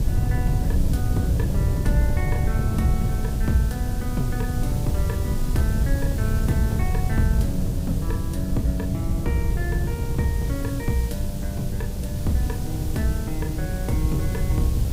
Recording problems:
hiss; SNR 11 dB
wind noise; below 130 Hz, SNR -3 dB

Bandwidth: 15.5 kHz